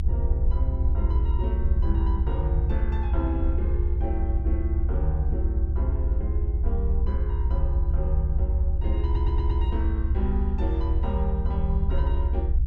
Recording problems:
rumble; below 72 Hz, SNR -9 dB
stutter; at 9 s

